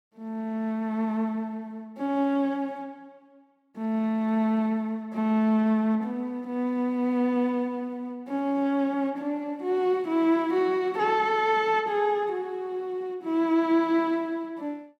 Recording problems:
none

